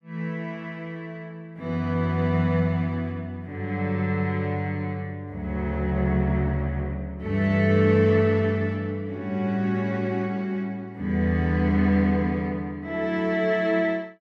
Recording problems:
none

